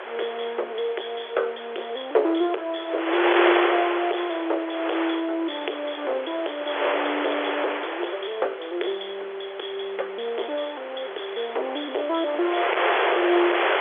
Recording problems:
telephone audio; 340 Hz to 3.5 kHz, G.711
distorted audio; hard clipping, signal-to-distortion ratio 12 dB
wind noise; below 2.1 kHz, SNR 0 dB

